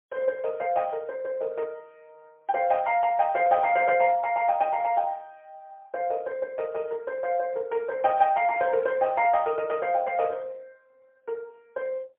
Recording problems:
telephone audio; 320 Hz to 3.1 kHz, AMR-NB, then MP3

